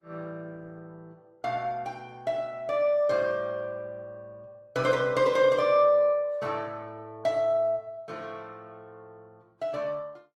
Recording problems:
lossy codec; Opus, log-spectral distance 2 dB, nothing above 17.7 kHz

